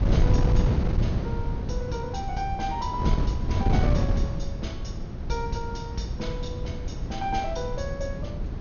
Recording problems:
low-pass filter; nothing above 6.7 kHz
wind noise; below 150 Hz, SNR -5 dB

